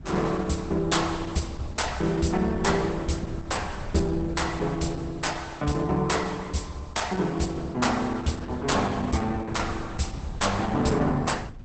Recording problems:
lossy compression; Opus, log-spectral distance 5 dB, nothing above 8.2 kHz
wind noise; below 140 Hz, SNR 14 dB

